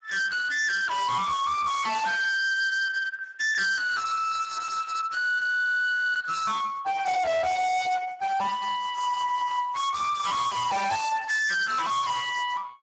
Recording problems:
lossy codec; Speex, log-spectral distance 5 dB, nothing above 7.6 kHz
distorted audio; hard clipping, uneven, signal-to-distortion ratio 4 dB

